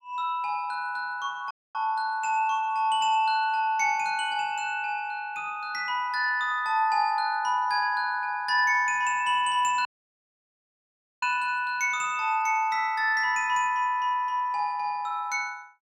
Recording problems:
audio cutting out; at 1.5 s and at 10 s for 1.5 s

